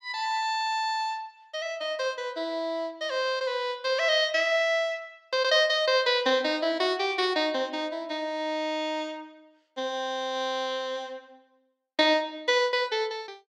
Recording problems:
none

